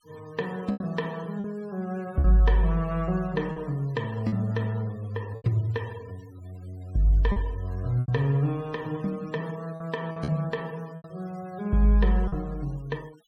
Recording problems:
noise reduction artefacts; signal-to-artefact ratio 25 dB
packet loss; 5% of the sound replaced, filled with repeated pitch periods

